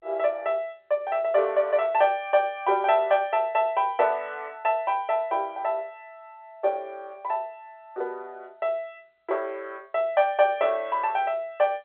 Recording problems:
telephone audio; 340 Hz to 3.5 kHz, G.711

